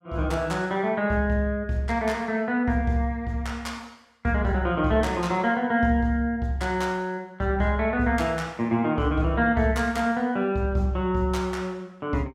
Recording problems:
none

